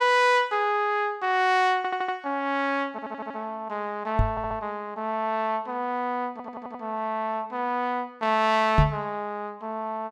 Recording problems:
stutter; 4 times, first at 2 s
microphone thump; at 4 s and at 9 s; peak +9 dB vs average level

